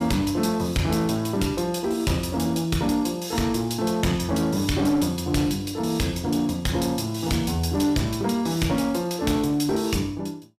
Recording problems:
distortion; hard clipping, uneven, signal-to-distortion ratio 11 dB

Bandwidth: 15 kHz